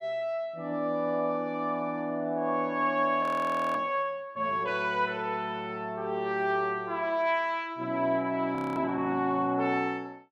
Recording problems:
frozen audio; at 3 s for 0.5 s and at 8.5 s

